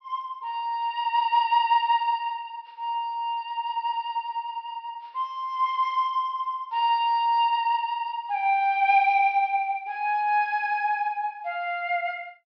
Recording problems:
treble cut off; nothing above 5.5 kHz

